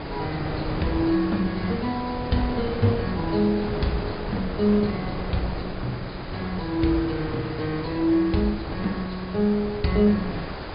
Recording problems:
treble missing; nothing above 4.9 kHz
lossy codec; MP2, log-spectral distance 13 dB
hiss; SNR 12 dB
wind noise; below 510 Hz, SNR 8 dB

